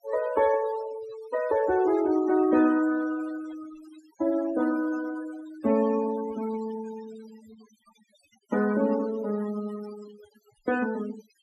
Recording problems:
denoising artefacts; signal-to-artefact ratio 16 dB

